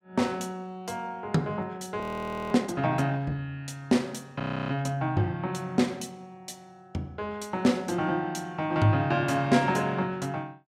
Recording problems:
frozen audio; at 2 s for 0.5 s and at 4.5 s

